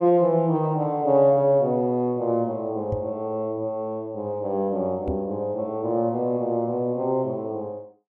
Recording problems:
microphone thump; at 3 s and at 5 s; peak -3 dB vs average level

